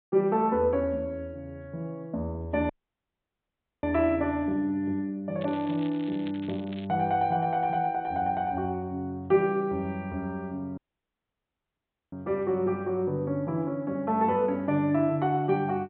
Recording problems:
treble cut off; nothing above 4 kHz
audio cutting out; at 2.5 s for 1 s and at 11 s for 1.5 s
crackling; from 5.5 to 7 s; loose cable, SNR 21 dB

